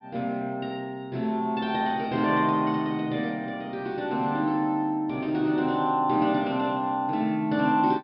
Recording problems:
low-pass filter; nothing above 5.5 kHz

